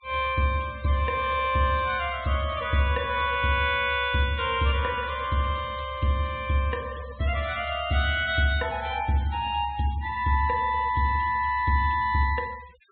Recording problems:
low-pass filter; nothing above 4 kHz
denoising artefacts; signal-to-artefact ratio 22 dB

